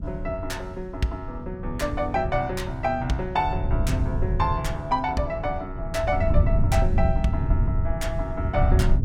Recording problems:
rumble; below 100 Hz, SNR 0 dB

